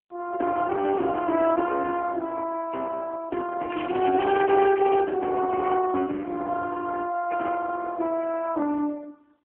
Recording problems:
phone line; 240 Hz to 3.3 kHz, AMR-NB
crackle; from 3.5 to 5 s; loose cable, SNR 13 dB

